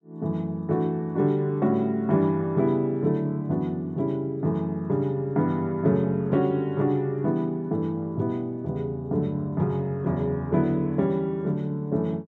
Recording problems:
none

